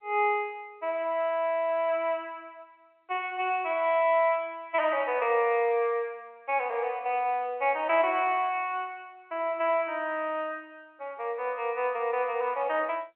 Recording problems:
telephone audio; 340 Hz to 3.1 kHz, G.711

